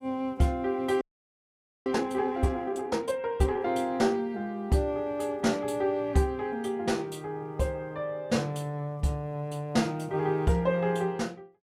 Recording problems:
frozen audio; at 1 s for 1 s

